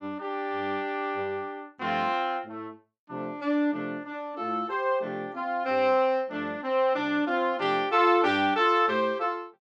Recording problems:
none

